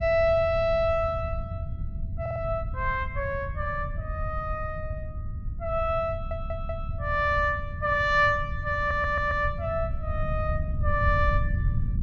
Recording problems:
rumble; below 100 Hz, SNR 6 dB
audio stuttering; at 2 s, at 6 s and at 9 s

